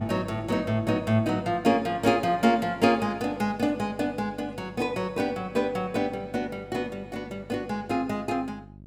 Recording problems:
hum; 50 Hz, harmonics up to 650 Hz, SNR 20 dB

